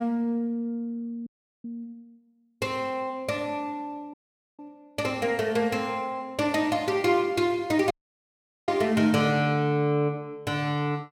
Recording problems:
audio cutting out; at 1.5 s, at 4 s and at 8 s for 1 s

